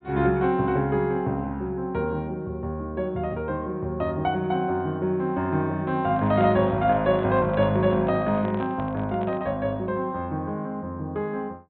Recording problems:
low-pass filter; nothing above 4 kHz
microphone handling noise; from 6 to 9.5 s; peak -5 dB vs average level

